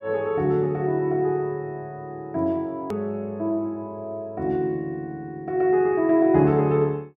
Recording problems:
click at an edit; at 3 s

